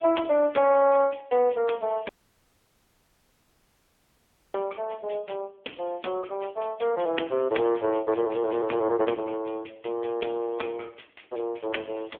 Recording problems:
phone line; 260 Hz to 3.3 kHz, AMR-NB
audio cutting out; at 2 s for 2.5 s

